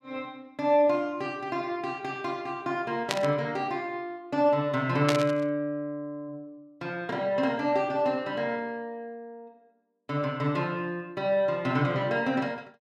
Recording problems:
static burst; at 3 s and at 5 s; peak +4 dB vs average level

